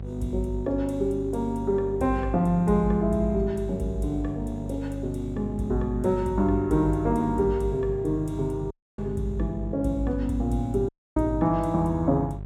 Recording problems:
hum; 50 Hz, harmonics up to 600 Hz, SNR 10 dB
dropout; at 8.5 s and at 11 s

